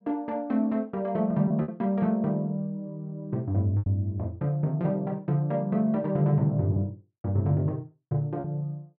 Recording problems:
lost packets; 3% of the sound replaced, filled with repeated pitch periods

